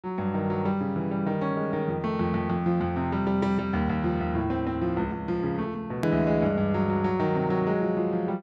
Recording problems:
edit click; at 6 s

